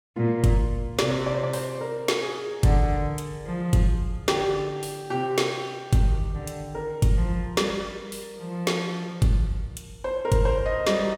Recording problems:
none

